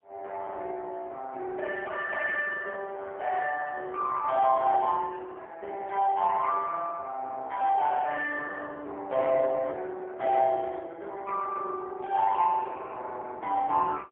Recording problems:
phone line; 320 Hz to 3.2 kHz, AMR-NB, then MP3

